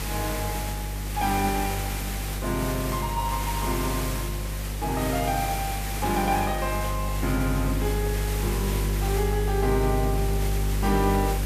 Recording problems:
electrical hum; 50 Hz, harmonics up to 550 Hz, SNR 1 dB
background hiss; slope -2 dB per octave, SNR 5 dB

